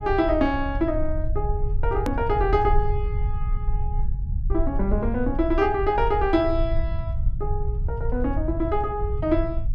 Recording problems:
low-frequency rumble; below 70 Hz, SNR 3 dB
edit click; at 2 s

